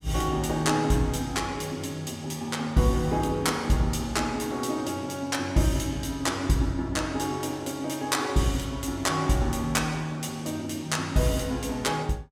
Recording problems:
none

